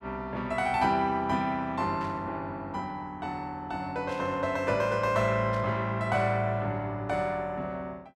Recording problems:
static burst; at 2 s, at 4 s and at 5.5 s; peak -13 dB vs average level

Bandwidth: 13.5 kHz